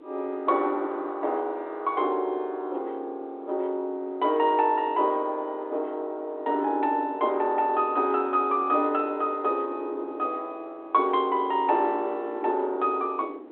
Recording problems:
phone line; 280 Hz to 3.6 kHz, G.726
wind noise; below 440 Hz, SNR 18 dB

